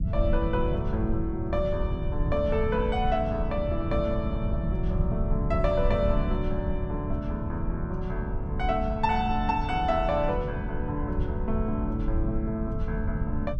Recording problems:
low-frequency rumble; below 110 Hz, SNR 2 dB

